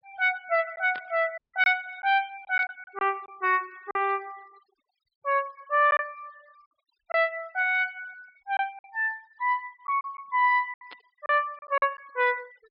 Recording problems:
treble missing; nothing above 5.5 kHz
denoising artefacts; signal-to-artefact ratio 27 dB
lost packets; 6% of the sound replaced, filled with silence
burst of static; at 1 s, at 2.5 s and at 11 s; peak -12 dB vs average level
dropout; at 1.5 s

